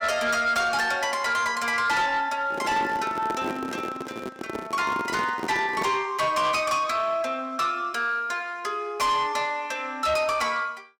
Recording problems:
distorted audio; soft clipping, signal-to-distortion ratio 12 dB
microphone handling noise; from 2.5 to 6 s; peak -2 dB vs average level

